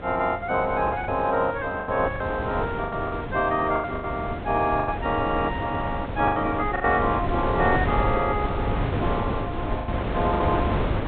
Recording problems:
low-pass filter; nothing above 4 kHz
hum; 50 Hz, harmonics up to 1 kHz, SNR 19 dB
wind noise; below 570 Hz, SNR 4 dB
lost packets; 8% of the sound replaced, filled with the last packet

